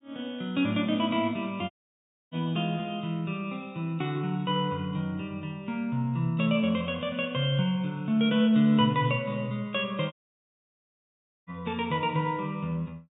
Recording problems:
treble missing; nothing above 4 kHz
audio cutting out; at 1.5 s for 0.5 s and at 10 s for 1.5 s

